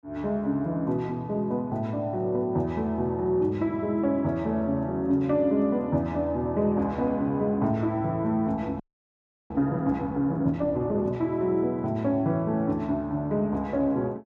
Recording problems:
audio freezing; at 9 s for 0.5 s

